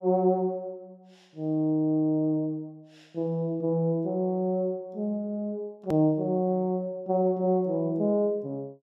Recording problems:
hard cut with a click; at 6 s

